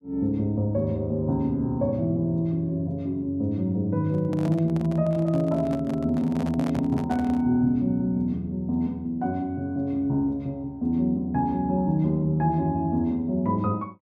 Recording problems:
handling noise; from 4 to 7.5 s; peak -8 dB vs average level

